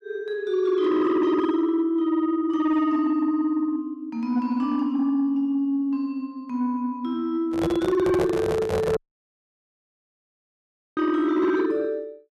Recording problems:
distorted audio; soft clipping, signal-to-distortion ratio 12 dB
handling noise; from 7.5 to 9 s; peak +1 dB vs average level
dropout; at 9 s for 2 s

